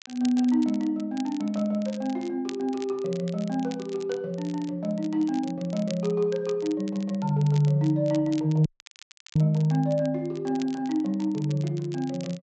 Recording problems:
low-pass filter; nothing above 8 kHz
crackling; vinyl, SNR 21 dB
dropout; at 8.5 s for 0.5 s

